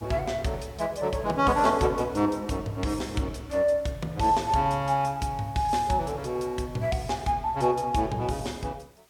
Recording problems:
background hiss; slope -2 dB per octave, SNR 29 dB

